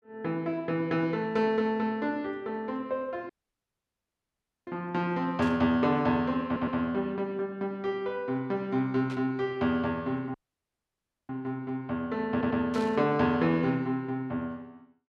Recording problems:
dropout; at 3.5 s for 1.5 s and at 10 s for 1 s
static burst; at 5.5 s, at 9 s and at 13 s; peak -10 dB vs average level
stutter; at 6.5 s and at 12 s

